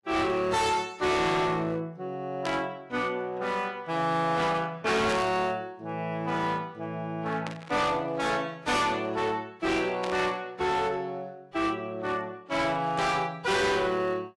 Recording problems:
codec artefacts; AAC, log-spectral distance 2 dB, nothing above 11.3 kHz
distortion; hard clipping, signal-to-distortion ratio 7 dB
static burst; 5 times, first at 2.5 s; peak -3 dB vs average level

